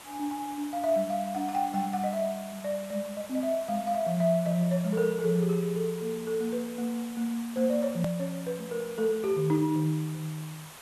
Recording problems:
background hiss; SNR 16 dB
hard cut with a click; at 8 s

